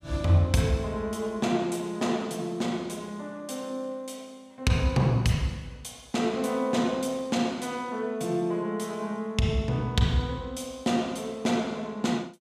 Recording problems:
none

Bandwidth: 14.5 kHz